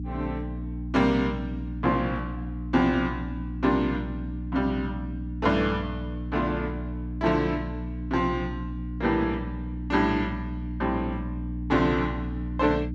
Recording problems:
mains hum; 60 Hz, harmonics up to 300 Hz, SNR 6 dB

